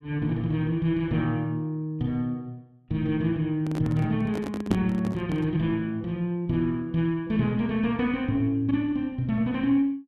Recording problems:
handling noise; from 3.5 to 5.5 s; peak +3 dB vs average level

